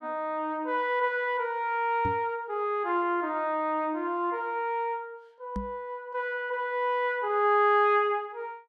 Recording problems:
microphone thump; at 2 s and at 5.5 s; peak -3 dB vs average level

